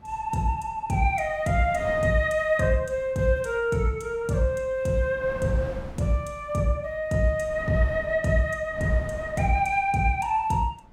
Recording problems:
wind on the microphone; below 390 Hz, SNR 17 dB

